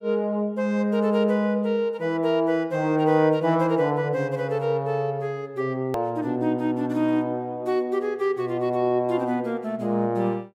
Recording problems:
edit click; at 6 s

